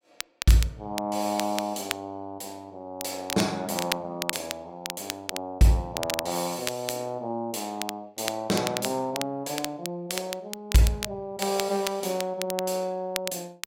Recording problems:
crackle; vinyl, SNR 6 dB

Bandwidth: 16 kHz